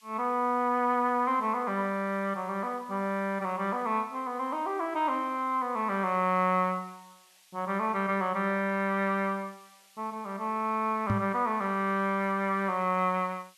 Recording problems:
background hiss; SNR 29 dB
knock on the microphone; at 11 s; peak +5 dB vs average level

